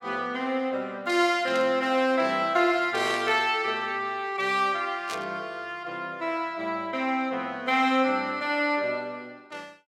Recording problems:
burst of static; at 1.5 s, at 3 s and at 5 s; peak -6 dB vs average level

